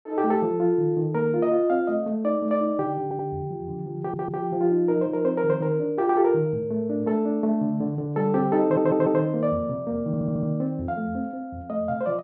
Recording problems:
audio stuttering; 4 times, first at 3 s

